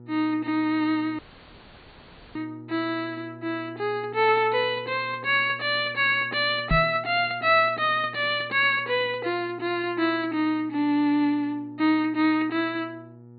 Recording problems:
low-pass filter; nothing above 4.6 kHz
hum; 60 Hz, harmonics up to 960 Hz, SNR 22 dB
audio cutting out; at 1 s for 1 s
knock on the microphone; at 6.5 s; peak +2 dB vs average level

